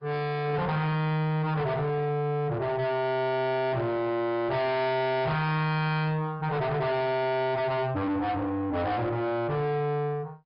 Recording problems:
treble missing; nothing above 5.2 kHz
lossy compression; Opus, log-spectral distance 2 dB
distortion; soft clipping, signal-to-distortion ratio 5 dB

